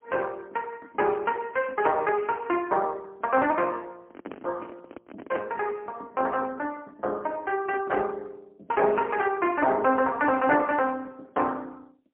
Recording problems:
telephone audio; 240 Hz to 3.1 kHz, AMR-NB, then MP3
microphone handling noise; from 4 to 5.5 s; peak -4 dB vs average level

